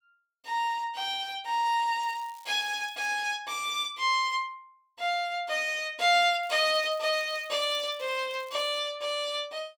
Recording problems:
crackle; from 2 to 3 s and from 6.5 to 9 s; loose cable, SNR 26 dB

